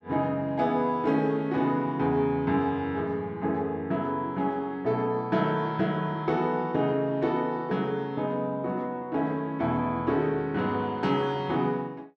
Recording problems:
none

